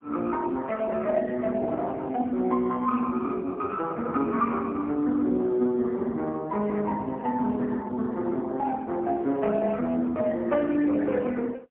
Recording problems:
telephone audio; 170 Hz to 3.3 kHz, AMR-NB, then MP3

